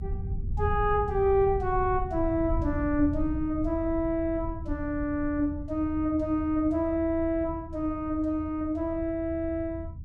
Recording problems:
low-frequency rumble; below 90 Hz, SNR 9 dB

